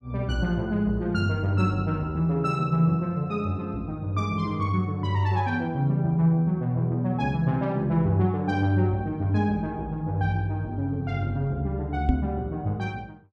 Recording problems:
knock on the microphone; at 12 s; peak +6 dB vs average level

